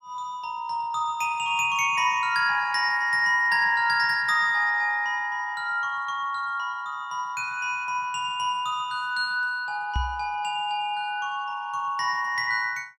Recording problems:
microphone thump; at 10 s; peak 0 dB vs average level

